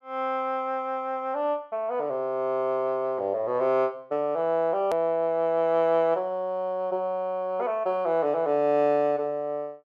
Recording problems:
hard cut with a click; at 5 s

